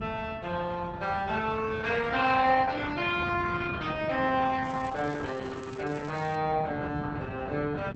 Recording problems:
codec artefacts; Opus, log-spectral distance 4 dB, nothing above 7.8 kHz
wind on the microphone; below 220 Hz, SNR 11 dB
crackle; from 4.5 to 6.5 s; loose cable, SNR 25 dB

